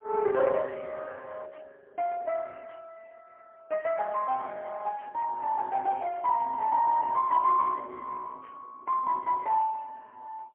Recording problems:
telephone audio; 280 Hz to 3.1 kHz, AMR-NB, then MP3

